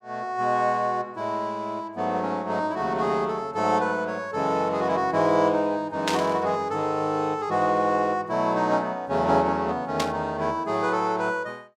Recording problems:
burst of static; at 6 s and at 10 s; peak +3 dB vs average level

